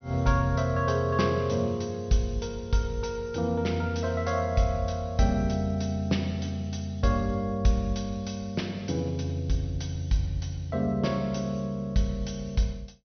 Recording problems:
low-pass filter; nothing above 6.1 kHz

